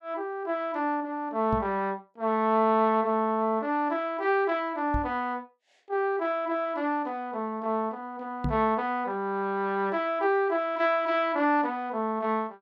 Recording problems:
microphone bump; at 1.5 s, at 5 s and at 8.5 s; peak +1 dB vs average level

